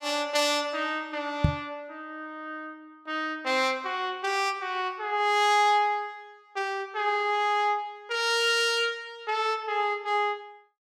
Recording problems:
microphone thump; at 1.5 s; peak +8 dB vs average level

